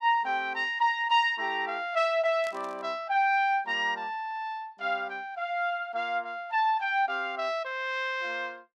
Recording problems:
static burst; at 2.5 s; peak -12 dB vs average level

